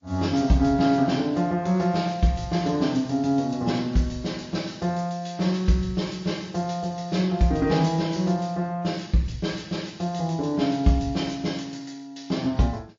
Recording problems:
lossy codec; G.722, then MP3, log-spectral distance 4 dB, nothing above 6.5 kHz

